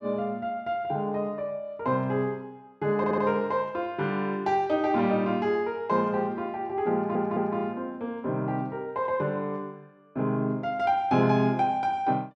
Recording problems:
stutter; at 3 s and at 7 s

